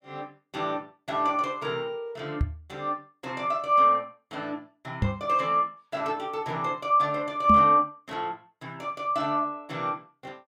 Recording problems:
microphone thump; at 2.5 s, at 5 s and at 7.5 s; peak +4 dB vs average level

